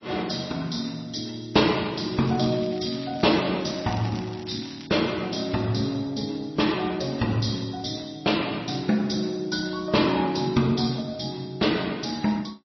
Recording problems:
codec artefacts; MP3, log-spectral distance 8 dB, nothing above 5.8 kHz
crackle; from 2 to 5 s; loose cable, SNR 18 dB

